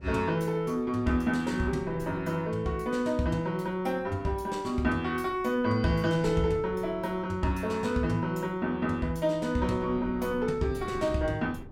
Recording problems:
wind on the microphone; below 280 Hz, SNR 18 dB

